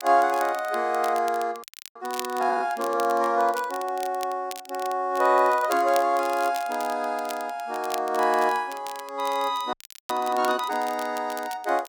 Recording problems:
crackle; vinyl, SNR 17 dB
frozen audio; at 1.5 s and at 9.5 s

